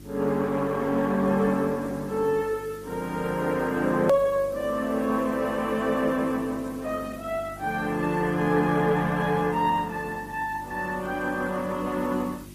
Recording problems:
lossy codec; Opus, log-spectral distance 4 dB, nothing above 15.1 kHz
hum; 50 Hz, harmonics up to 400 Hz, SNR 19 dB
hiss; slope 0 dB per octave, SNR 26 dB
click at an edit; at 4 s

